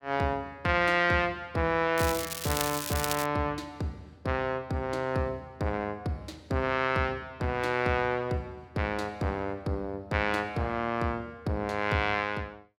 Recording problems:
crackling; from 2 to 3.5 s; loose cable, SNR 4 dB

